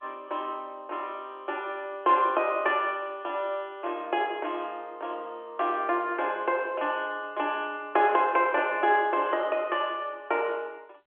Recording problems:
telephone audio; 260 Hz to 3.4 kHz, G.711

